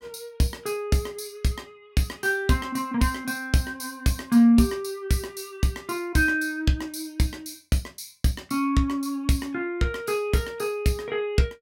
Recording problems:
none

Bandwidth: 16.5 kHz